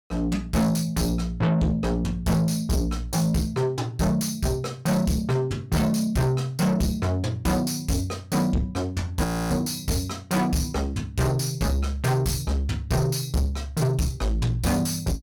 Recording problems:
distorted audio; soft clipping, signal-to-distortion ratio 7 dB
audio freezing; at 9 s

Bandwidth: 17.5 kHz